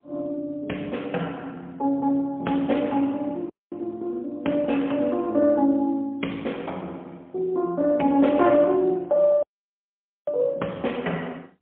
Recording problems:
telephone audio; 240 Hz to 3.4 kHz, AMR-NB, then MP3
audio cutting out; at 3.5 s and at 9.5 s for 1 s

